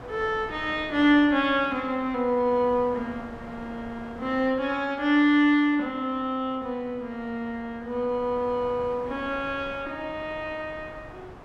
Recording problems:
wind noise; below 1.1 kHz, SNR 19 dB

